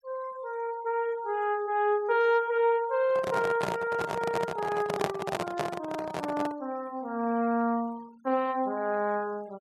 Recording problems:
denoising artefacts; signal-to-artefact ratio 24 dB
microphone handling noise; from 3 to 6.5 s; peak +4 dB vs average level

